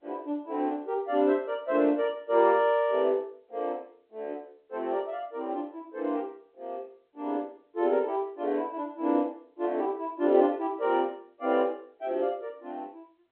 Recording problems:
phone line; 240 Hz to 3.5 kHz, G.711

